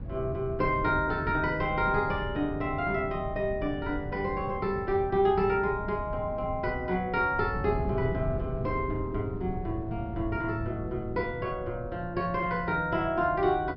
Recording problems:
treble missing; nothing above 5.5 kHz
wind noise; below 160 Hz, SNR 9 dB

